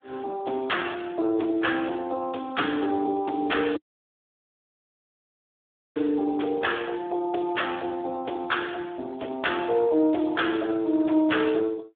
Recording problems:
phone line; 260 Hz to 3.6 kHz, Speex
distorted audio; soft clipping, signal-to-distortion ratio 16 dB
audio cutting out; at 4 s for 2 s

